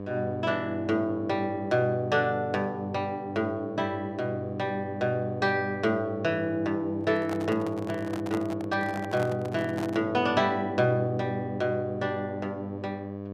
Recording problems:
hum; 50 Hz, harmonics up to 1.2 kHz, SNR 9 dB
microphone handling noise; from 7 to 10 s; peak -4 dB vs average level

